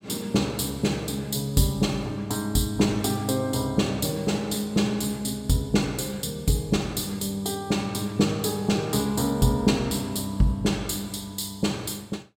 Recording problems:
none

